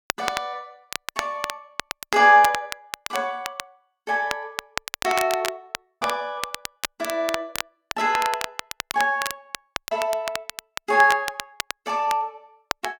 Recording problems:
crackling; vinyl, SNR 9 dB

